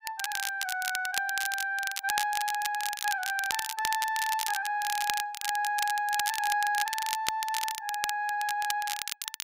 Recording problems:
crackle; vinyl, SNR 4 dB

